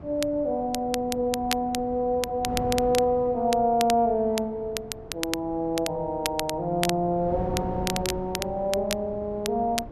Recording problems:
wind on the microphone; below 430 Hz, SNR 14 dB
crackle; vinyl, SNR 9 dB

